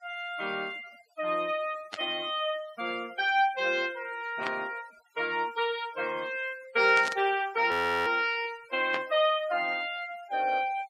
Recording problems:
denoising artefacts; signal-to-artefact ratio 21 dB
burst of static; 4 times, first at 2 s; peak -2 dB vs average level
audio freezing; at 7.5 s

